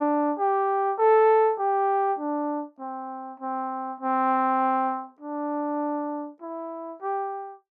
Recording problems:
none

